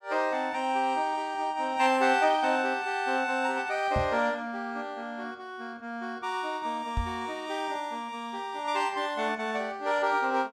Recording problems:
microphone thump; at 4 s and at 7 s; peak +1 dB vs average level

